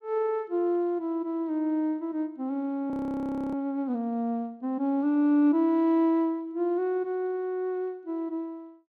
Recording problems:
audio freezing; at 3 s for 0.5 s

